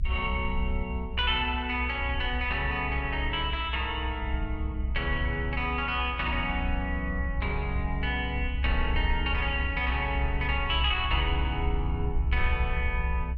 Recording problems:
low-frequency rumble; below 66 Hz, strongest tone 62 Hz, SNR 3 dB

